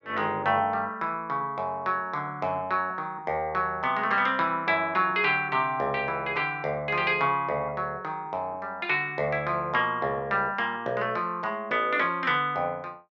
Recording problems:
none

